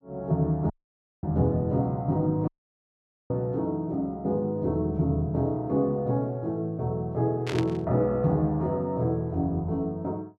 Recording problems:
dropout; at 0.5 s for 0.5 s and at 2.5 s for 1 s
burst of static; at 7.5 s; peak -3 dB vs average level

